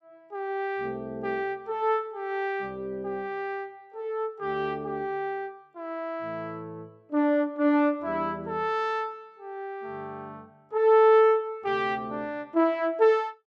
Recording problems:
none

